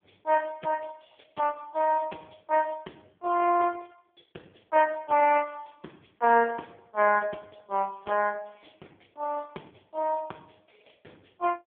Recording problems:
phone line; 300 Hz to 2.7 kHz, AMR-NB

